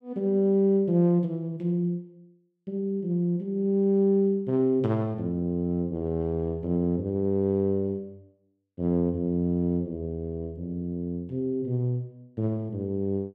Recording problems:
none

